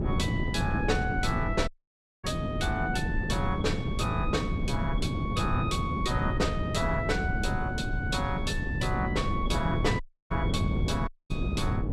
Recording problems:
wind on the microphone; below 220 Hz, SNR 0 dB
dropout; at 1.5 s for 0.5 s, at 10 s and at 11 s

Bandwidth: 14.5 kHz